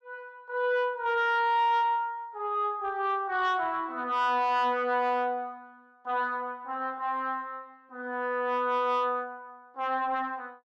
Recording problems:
distorted audio; soft clipping, signal-to-distortion ratio 10 dB

